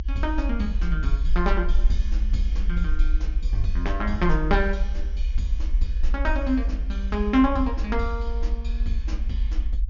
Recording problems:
treble missing; nothing above 6.8 kHz
rumble; below 48 Hz, SNR -1 dB

